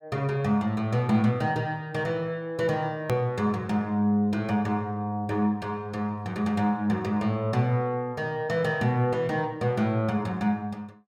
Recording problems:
hard cut with a click; at 3 s

